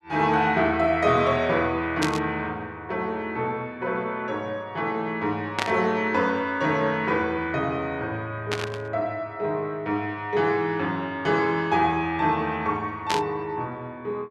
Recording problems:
burst of static; 4 times, first at 2 s; peak +3 dB vs average level

